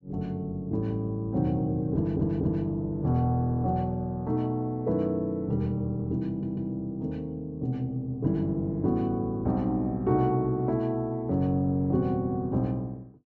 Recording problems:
treble missing; nothing above 8 kHz
audio stuttering; at 2 s and at 6.5 s

